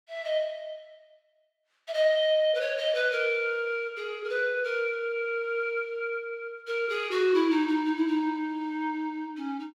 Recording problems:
none

